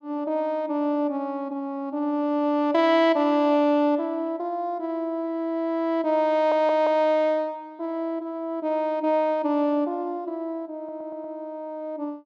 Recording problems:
stutter; at 6.5 s and at 11 s

